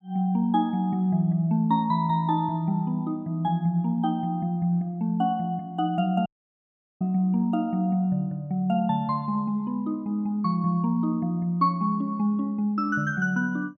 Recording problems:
dropout; at 6.5 s for 1 s

